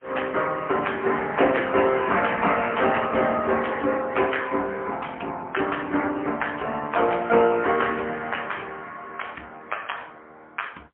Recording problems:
telephone audio; 300 Hz to 3.1 kHz, AMR-NB, then MP3

